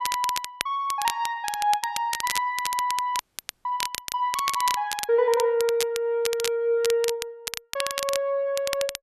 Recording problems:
crackle; vinyl, SNR 6 dB
frozen audio; at 3 s

